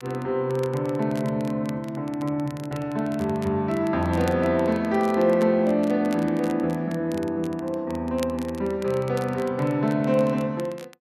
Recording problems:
crackle; vinyl, SNR 22 dB

